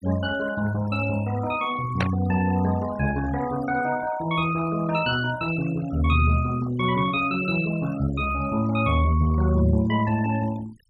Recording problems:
noise reduction artefacts; signal-to-artefact ratio 16 dB
burst of static; at 2 s; peak +1 dB vs average level

